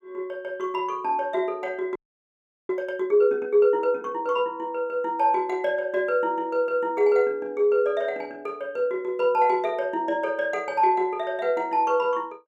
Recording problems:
audio freezing; at 2 s for 0.5 s

